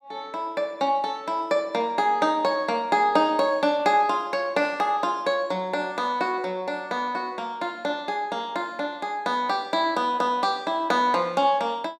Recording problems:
none

